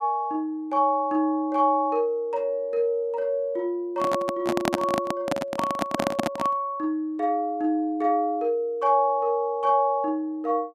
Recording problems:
handling noise; from 4 to 6.5 s; peak +5 dB vs average level

